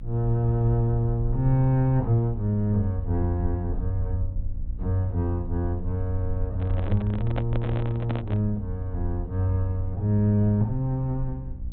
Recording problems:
treble missing; nothing above 4 kHz
hum; 60 Hz, harmonics up to 600 Hz, SNR 19 dB
low-frequency rumble; below 60 Hz, strongest tone 22 Hz, SNR 10 dB
microphone handling noise; from 6.5 to 8.5 s; peak -2 dB vs average level

